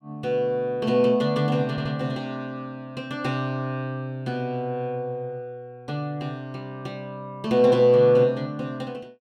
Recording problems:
stutter; at 1.5 s

